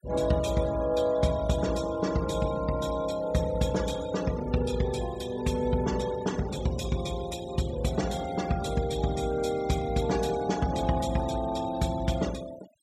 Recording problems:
denoising artefacts; signal-to-artefact ratio 16 dB

